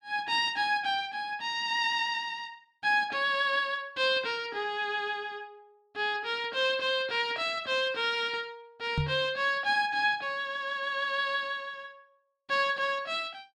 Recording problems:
microphone bump; at 9 s; peak +2 dB vs average level

